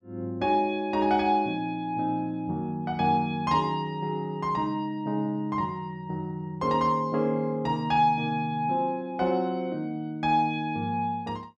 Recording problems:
none

